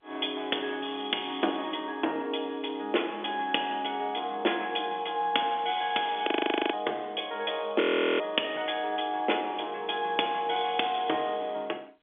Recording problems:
phone line; 260 Hz to 3.5 kHz, G.711
audio freezing; at 6.5 s and at 8 s

